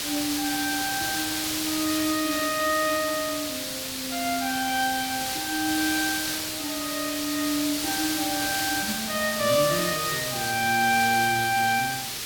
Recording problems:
background hiss; slope +1 dB per octave, SNR 2 dB

